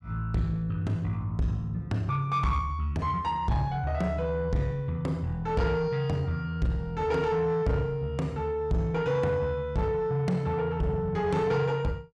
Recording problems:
distortion; soft clipping, signal-to-distortion ratio 10 dB

